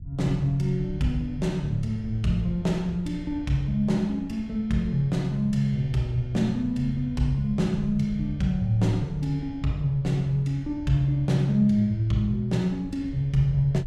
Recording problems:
low-frequency rumble; below 100 Hz, SNR 15 dB

